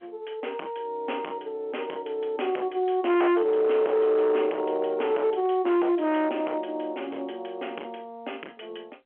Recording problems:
telephone audio; 340 Hz to 3.2 kHz, G.711
distorted audio; hard clipping, uneven, signal-to-distortion ratio 8 dB

